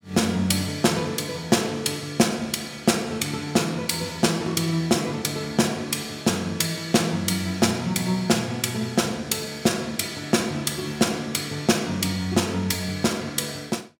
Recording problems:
none

